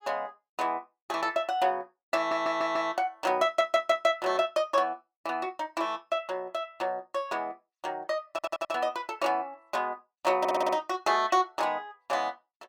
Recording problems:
stutter; 4 times, first at 2 s

